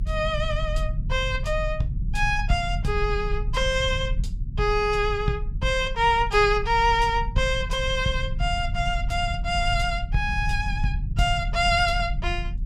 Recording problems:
rumble; below 86 Hz, strongest tone 40 Hz, SNR 6 dB

